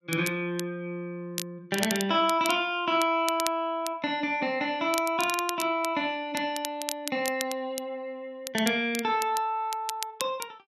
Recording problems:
crackle; vinyl, SNR 9 dB

